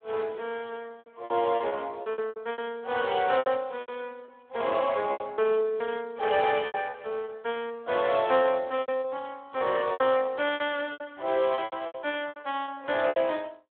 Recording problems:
phone line; 340 Hz to 3.6 kHz, Speex
lost packets; 14% of the sound replaced, filled with repeated pitch periods

